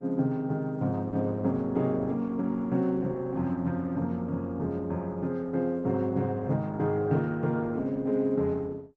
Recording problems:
lossy compression; Opus, log-spectral distance 2 dB

